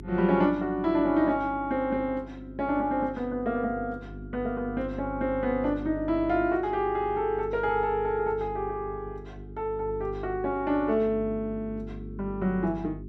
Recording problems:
hum; 50 Hz, harmonics up to 400 Hz, SNR 14 dB

